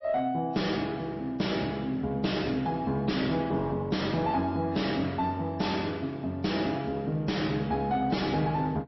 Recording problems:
lossy codec; MP3, log-spectral distance 3 dB, nothing above 5.7 kHz
distortion; soft clipping, signal-to-distortion ratio 6 dB

